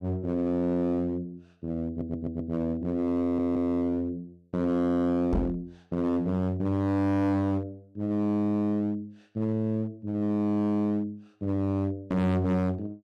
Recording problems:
distortion; hard clipping, uneven, signal-to-distortion ratio 6 dB
stutter; at 2 s and at 3 s
microphone bump; at 5.5 s; peak +5 dB vs average level

